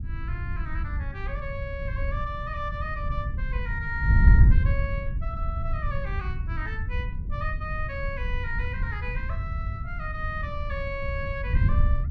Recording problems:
wind noise; below 90 Hz, SNR -6 dB

